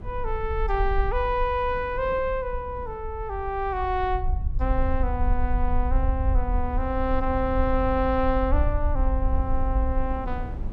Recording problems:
rumble; below 58 Hz, SNR 2 dB
wind noise; below 290 Hz, SNR 18 dB

